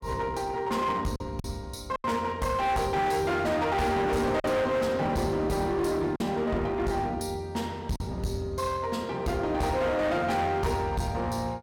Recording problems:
distorted audio; hard clipping, uneven, signal-to-distortion ratio 7 dB
packet loss; 2% of the sound replaced, filled with silence

